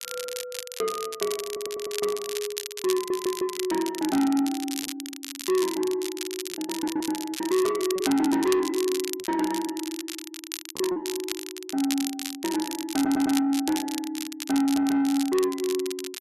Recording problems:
distorted audio; soft clipping, signal-to-distortion ratio 11 dB
crackle; vinyl, SNR 8 dB
lost packets; 3% of the sound replaced, filled with repeated pitch periods
audio stuttering; 4 times, first at 1.5 s

